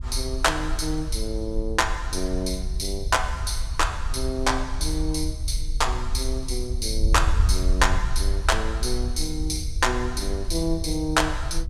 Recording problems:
wind on the microphone; below 62 Hz, SNR 3 dB

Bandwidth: 15.5 kHz